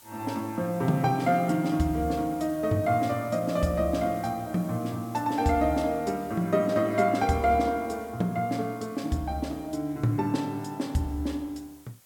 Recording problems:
background hiss; slope -1 dB per octave, SNR 24 dB

